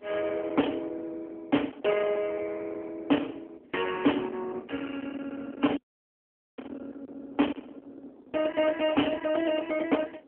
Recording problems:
telephone audio; 220 Hz to 3.2 kHz, AMR-NB
distorted audio; hard clipping, uneven, signal-to-distortion ratio 9 dB
wind noise; below 830 Hz, SNR 15 dB
audio cutting out; at 6 s for 1 s

